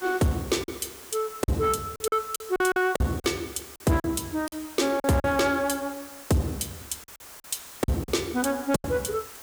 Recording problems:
distorted audio; soft clipping, signal-to-distortion ratio 11 dB
background hiss; slope -1 dB per octave, SNR 16 dB
lost packets; 9% of the sound replaced, filled with silence

